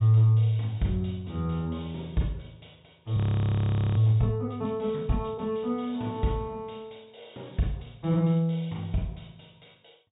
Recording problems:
treble missing; nothing above 4 kHz
audio freezing; at 3 s for 1 s

